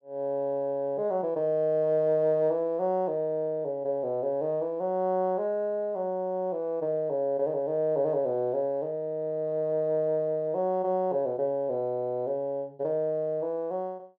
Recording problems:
none

